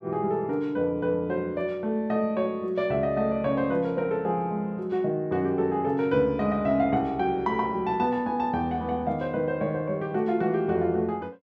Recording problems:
none

